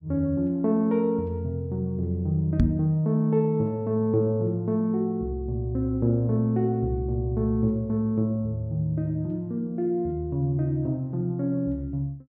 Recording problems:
microphone thump; at 2.5 s; peak +7 dB vs average level

